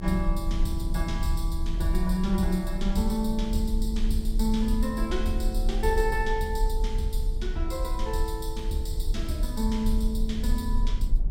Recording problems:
rumble; below 42 Hz, strongest tone 30 Hz, SNR 1 dB
wind noise; below 160 Hz, SNR 16 dB

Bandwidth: 16 kHz